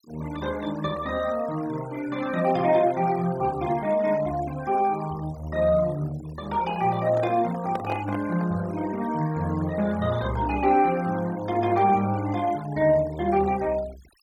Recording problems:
noise reduction artefacts; signal-to-artefact ratio 19 dB
handling noise; from 7 to 8.5 s; peak -5 dB vs average level

